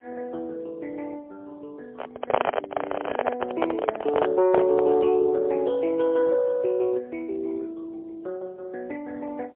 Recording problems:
telephone audio; 320 Hz to 2.5 kHz, AMR-NB, then MP3
microphone handling noise; from 2 to 5 s; peak +6 dB vs average level

